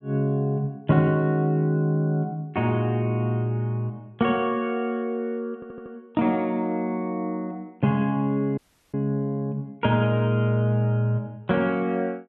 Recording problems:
audio stuttering; at 5.5 s
audio cutting out; at 8.5 s

